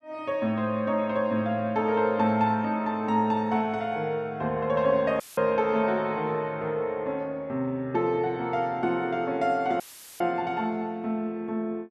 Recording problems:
dropout; at 5 s and at 10 s; filled with static

